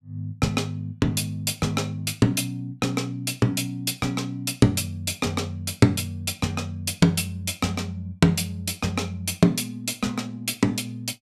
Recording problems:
none

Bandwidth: 14.5 kHz